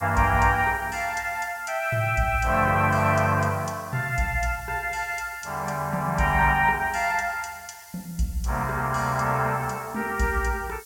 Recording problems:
hiss; SNR 21 dB

